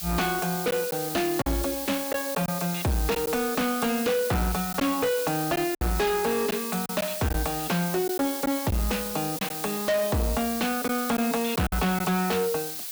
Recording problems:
distorted audio; hard clipping, signal-to-distortion ratio 7 dB
hiss; slope +3 dB per octave, SNR 6 dB
packet loss; 3% of the sound replaced, filled with silence

